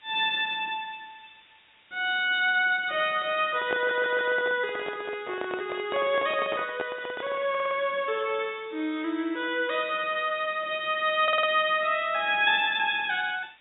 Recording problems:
treble missing; nothing above 4 kHz
hiss; SNR 30 dB
handling noise; from 3.5 to 7.5 s; peak -2 dB vs average level
stutter; at 4 s, at 7.5 s and at 11 s

